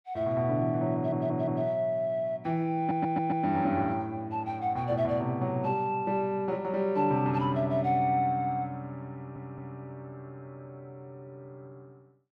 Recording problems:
audio stuttering; at 1 s, at 3 s and at 9 s

